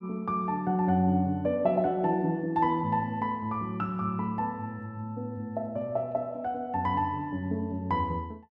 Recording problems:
none

